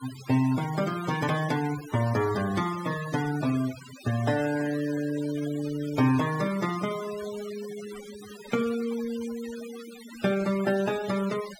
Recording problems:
denoising artefacts; signal-to-artefact ratio 13 dB

